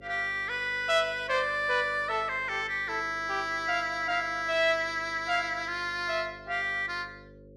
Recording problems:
hum; 50 Hz, harmonics up to 550 Hz, SNR 23 dB

